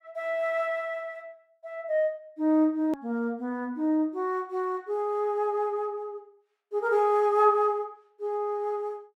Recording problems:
click at an edit; at 3 s

